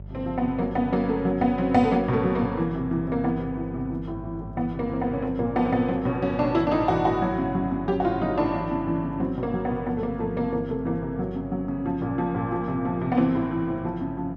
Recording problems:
mains hum; 50 Hz, harmonics up to 600 Hz, SNR 15 dB

